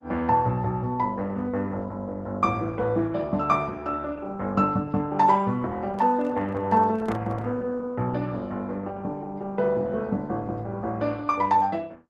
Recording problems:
lossy codec; Opus, log-spectral distance 2 dB
microphone handling noise; from 6 to 7.5 s; peak -7 dB vs average level

